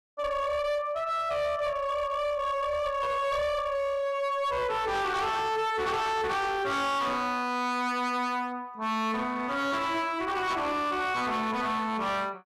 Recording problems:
distortion; hard clipping, signal-to-distortion ratio 8 dB

